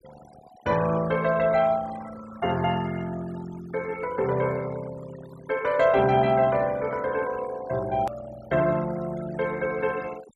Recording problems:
noise reduction artefacts; signal-to-artefact ratio 17 dB
edit click; at 8 s

